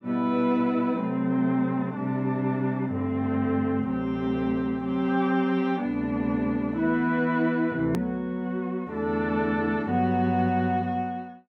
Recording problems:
click at an edit; at 8 s

